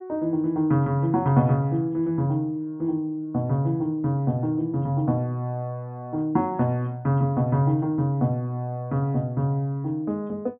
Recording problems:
treble missing; nothing above 3.6 kHz

